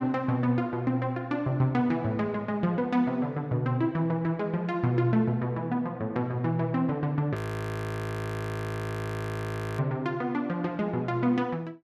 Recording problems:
frozen audio; at 7.5 s for 2.5 s

